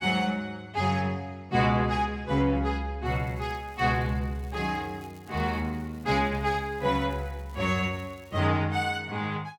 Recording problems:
crackle; from 3 to 8.5 s; loose cable, SNR 29 dB

